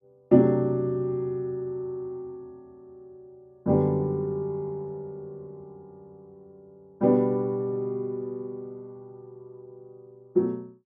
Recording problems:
none

